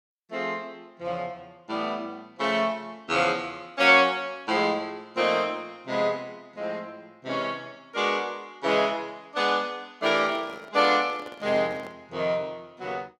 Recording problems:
microphone handling noise; from 10 to 12 s; peak -12 dB vs average level

